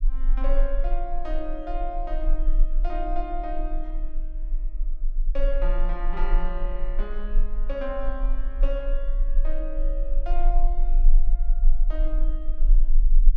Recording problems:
rumble; below 32 Hz, strongest tone 18 Hz, SNR -7 dB

